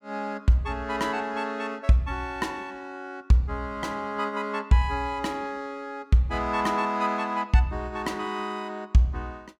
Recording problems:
none

